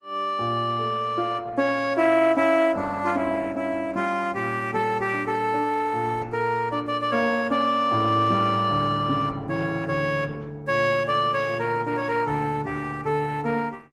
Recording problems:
codec artefacts; Opus, log-spectral distance 3 dB, nothing above 18.3 kHz

